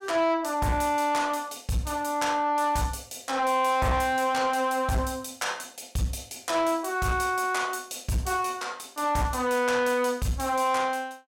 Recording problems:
distortion; soft clipping, signal-to-distortion ratio 11 dB

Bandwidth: 16.5 kHz